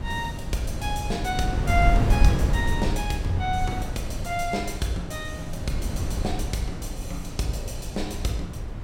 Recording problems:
wind noise; below 120 Hz, SNR 0 dB

